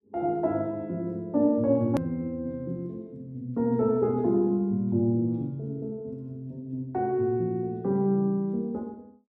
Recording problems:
click at an edit; at 2 s

